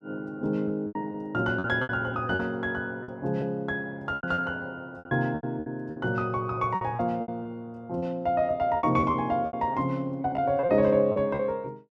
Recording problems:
packet loss; 12% of the sound replaced, filled with repeated pitch periods

